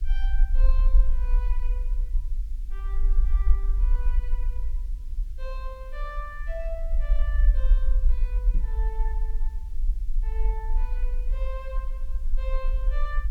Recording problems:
electrical hum; 50 Hz, harmonics up to 500 Hz, SNR 16 dB
hiss; slope +1 dB per octave, SNR 21 dB
low-frequency rumble; below 44 Hz, SNR -14 dB
knock on the microphone; at 8.5 s; peak +4 dB vs average level

